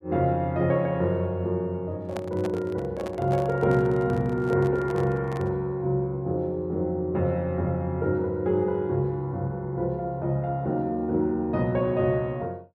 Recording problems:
microphone handling noise; from 2 to 5.5 s; peak -5 dB vs average level

